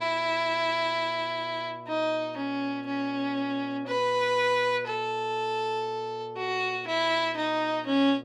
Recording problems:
hum; 60 Hz, harmonics up to 1.3 kHz, SNR 20 dB

